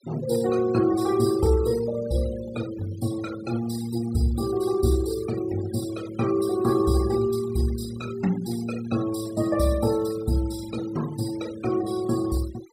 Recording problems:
noise reduction artefacts; signal-to-artefact ratio 17 dB

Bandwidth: 15.5 kHz